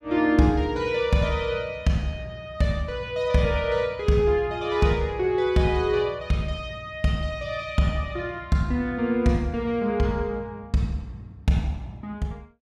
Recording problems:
none

